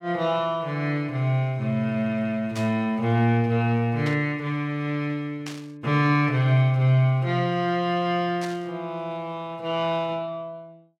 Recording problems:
burst of static; 4 times, first at 2.5 s; peak -7 dB vs average level

